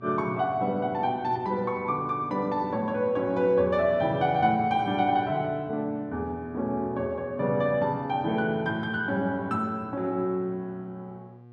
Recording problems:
hum; 60 Hz, harmonics up to 1.2 kHz, SNR 22 dB

